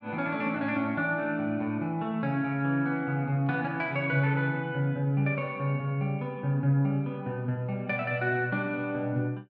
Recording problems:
none

